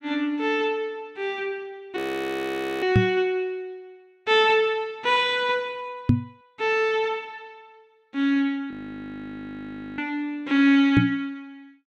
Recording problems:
audio freezing; at 2 s for 1 s and at 8.5 s for 1.5 s
microphone thump; at 3 s, at 6 s and at 11 s; peak +9 dB vs average level

